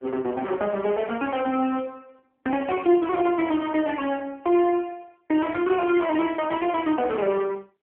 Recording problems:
phone line; 220 Hz to 3.3 kHz, AMR-NB

